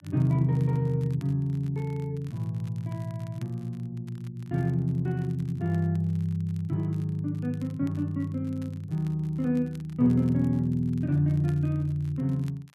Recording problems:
crackling; vinyl, SNR 30 dB

